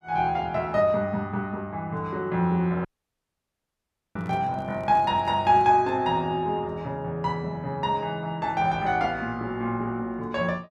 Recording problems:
dropout; at 3 s for 1.5 s
handling noise; from 4 to 6 s; peak -9 dB vs average level

